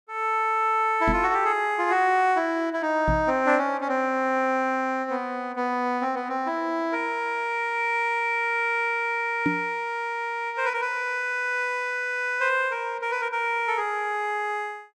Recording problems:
knock on the microphone; at 1 s, at 3 s and at 9.5 s; peak +3 dB vs average level

